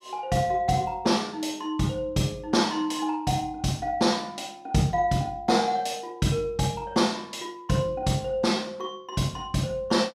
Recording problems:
none

